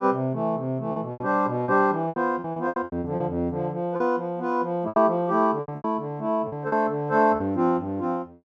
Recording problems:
lost packets; 12% of the sound replaced, filled with repeated pitch periods

